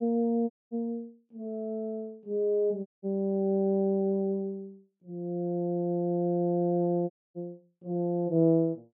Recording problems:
dropout; at 0.5 s, at 3 s and at 7 s

